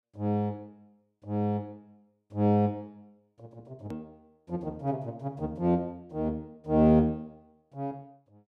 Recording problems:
hard cut with a click; at 4 s

